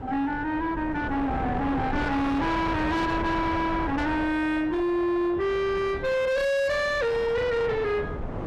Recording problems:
distorted audio; soft clipping, signal-to-distortion ratio 7 dB
wind on the microphone; below 780 Hz, SNR 8 dB

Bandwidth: 14 kHz